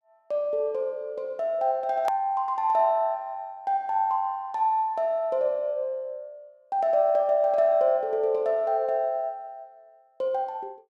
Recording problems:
click at an edit; at 2 s

